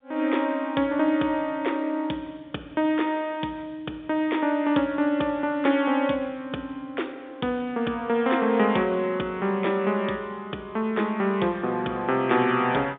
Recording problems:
telephone audio; 190 Hz to 3.7 kHz, G.711

